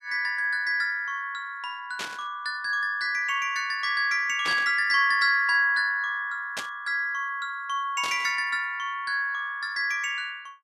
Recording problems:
static burst; 4 times, first at 2 s; peak -2 dB vs average level

